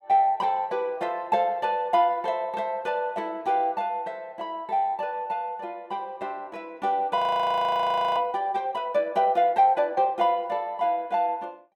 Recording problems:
frozen audio; at 7 s for 1 s

